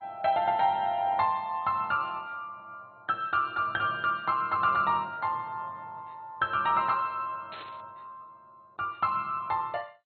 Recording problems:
lossy codec; MP2, log-spectral distance 2 dB, nothing above 4.2 kHz
burst of static; at 7.5 s; peak -12 dB vs average level

